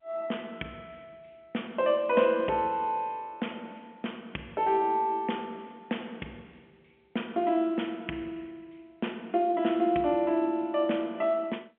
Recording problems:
telephone audio; 170 Hz to 3.4 kHz, G.711

